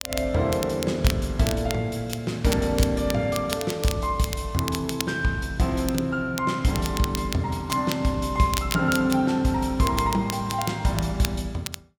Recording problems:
crackle; vinyl, SNR 10 dB

